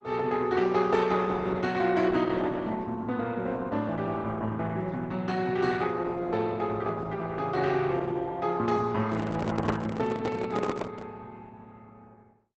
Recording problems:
lossy compression; Opus, log-spectral distance 3 dB, nothing above 7.8 kHz
microphone handling noise; from 9 to 11 s; peak +3 dB vs average level

